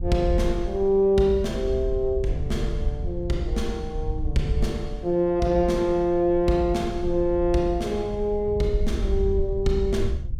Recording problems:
low-frequency rumble; below 72 Hz, SNR 8 dB

